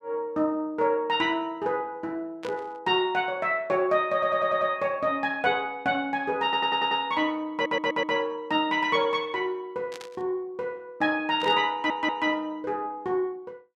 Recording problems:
burst of static; at 2.5 s, at 10 s and at 11 s; peak -10 dB vs average level
audio stuttering; 4 times, first at 4 s

